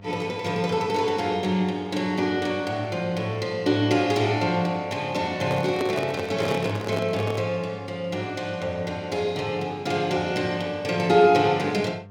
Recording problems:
hum; 50 Hz, harmonics up to 1.1 kHz, SNR 20 dB
microphone handling noise; from 5.5 to 7.5 s; peak 0 dB vs average level

